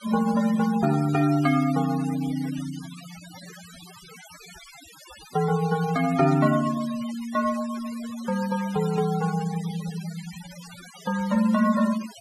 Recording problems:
noise reduction artefacts; signal-to-artefact ratio 17 dB

